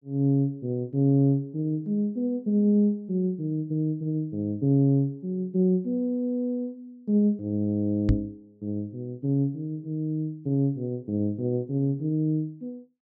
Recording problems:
microphone bump; at 8 s; peak +6 dB vs average level

